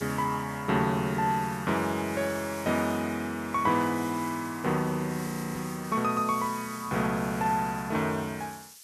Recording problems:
hiss; SNR 16 dB
audio freezing; at 5.5 s

